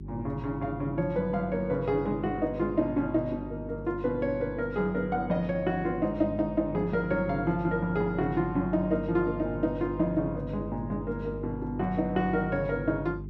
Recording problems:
electrical hum; 50 Hz, harmonics up to 400 Hz, SNR 11 dB

